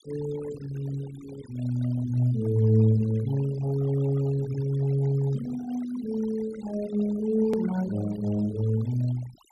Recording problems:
denoising artefacts; signal-to-artefact ratio 19 dB
click at an edit; at 7.5 s

